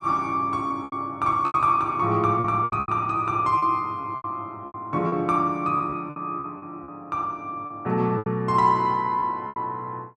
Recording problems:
packet loss; 11% of the sound replaced, filled with repeated pitch periods

